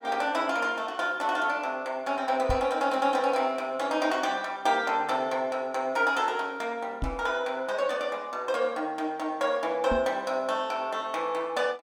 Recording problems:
microphone thump; at 2.5 s, at 7 s and at 10 s; peak 0 dB vs average level

